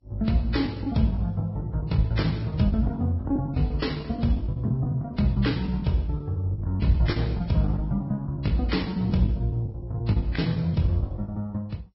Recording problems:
codec artefacts; MP2, then Vorbis, log-spectral distance 2 dB, nothing above 5.5 kHz
packet loss; 15% of the sound replaced, filled with the last packet

